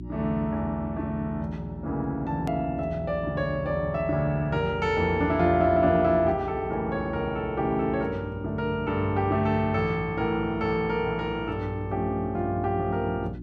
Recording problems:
hum; 60 Hz, harmonics up to 360 Hz, SNR 13 dB
edit click; at 2.5 s

